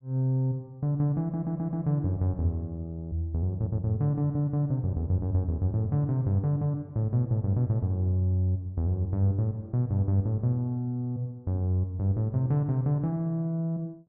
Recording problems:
audio stuttering; at 1 s and at 3.5 s

